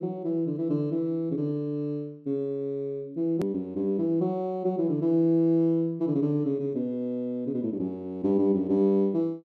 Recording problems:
click at an edit; at 3.5 s

